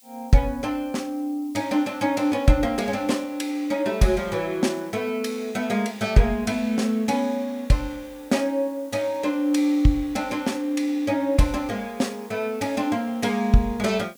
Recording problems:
background hiss; SNR 28 dB

